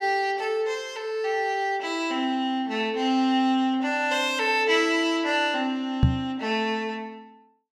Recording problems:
microphone thump; at 6 s; peak +9 dB vs average level

